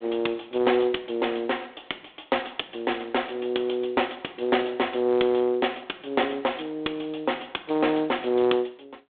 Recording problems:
phone line; 260 Hz to 3.5 kHz, G.726

